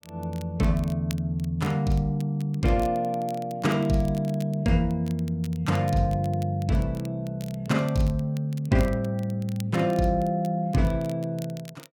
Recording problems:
crackle; vinyl, SNR 23 dB

